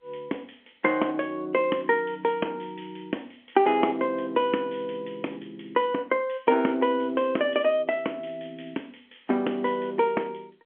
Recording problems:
phone line; 220 Hz to 3.3 kHz, G.711

